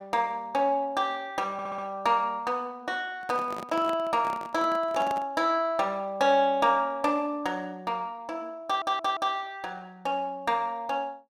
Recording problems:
stutter; at 1.5 s and at 8.5 s
handling noise; from 3 to 5.5 s; peak -5 dB vs average level

